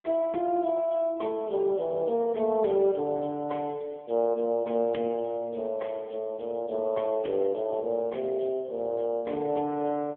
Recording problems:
phone line; 190 Hz to 3.6 kHz, AMR-NB

